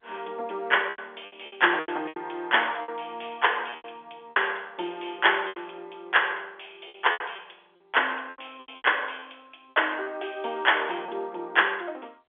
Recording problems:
phone line; 280 Hz to 3.5 kHz, G.711
packet loss; 10% of the sound replaced, filled with repeated pitch periods

